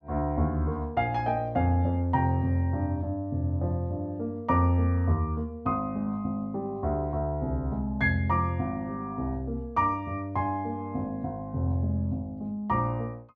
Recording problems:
none

